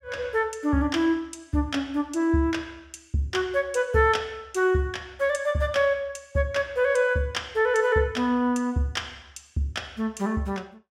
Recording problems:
none

